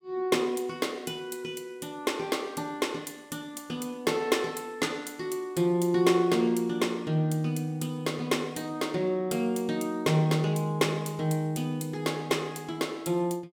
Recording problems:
none

